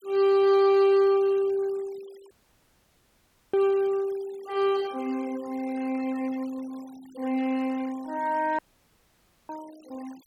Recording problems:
noise reduction artefacts; signal-to-artefact ratio 24 dB
dropout; at 2.5 s for 1 s and at 8.5 s for 1 s

